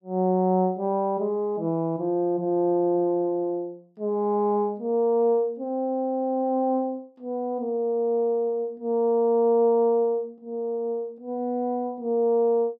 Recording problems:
none

